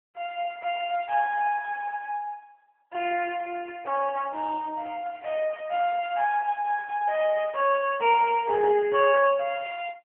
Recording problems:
phone line; 320 Hz to 3.2 kHz, AMR-NB

